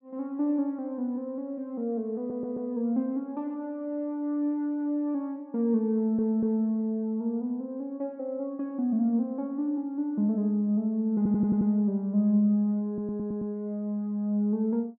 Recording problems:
stutter; 4 times, first at 2 s

